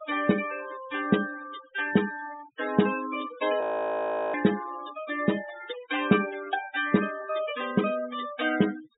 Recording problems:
treble cut off; nothing above 4 kHz
denoising artefacts; signal-to-artefact ratio 13 dB
frozen audio; at 3.5 s for 0.5 s

